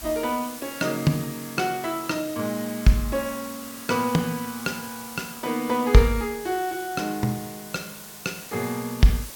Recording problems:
background hiss; slope -1 dB per octave, SNR 12 dB

